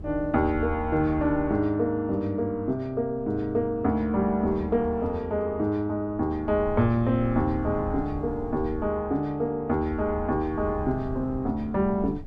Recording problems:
wind on the microphone; below 130 Hz, SNR 14 dB

